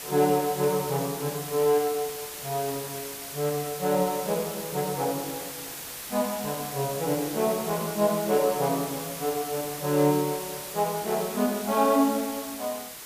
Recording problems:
hiss; slope 0 dB per octave, SNR 8 dB

